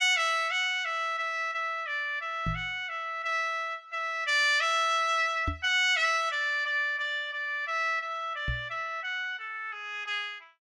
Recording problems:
microphone bump; at 2.5 s, at 5.5 s and at 8.5 s; peak -1 dB vs average level

